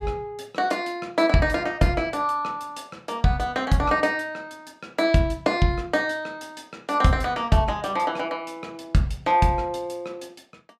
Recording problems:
none

